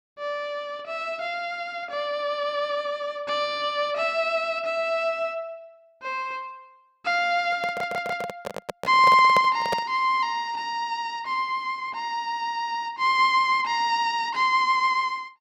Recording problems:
handling noise; from 7.5 to 10 s; peak +1 dB vs average level
audio stuttering; at 7.5 s

